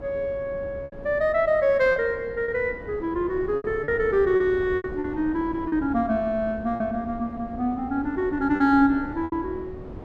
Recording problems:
wind noise; below 420 Hz, SNR 15 dB
packet loss; 6% of the sound replaced, filled with repeated pitch periods

